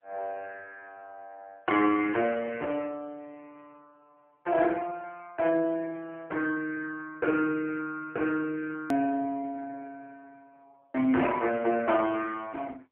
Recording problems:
telephone audio; 260 Hz to 3.1 kHz, AMR-NB
click at an edit; at 9 s

